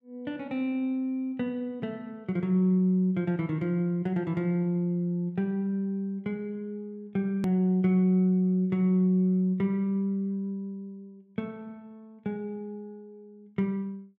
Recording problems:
hard cut with a click; at 7.5 s

